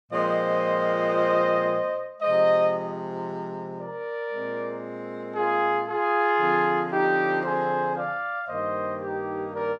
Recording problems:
none

